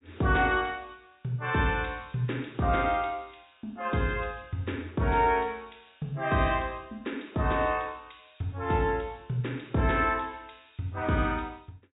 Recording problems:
low-pass filter; nothing above 4 kHz

